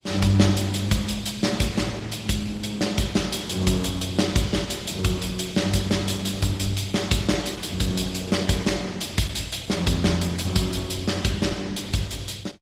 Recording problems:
lossy codec; Opus, log-spectral distance 5 dB

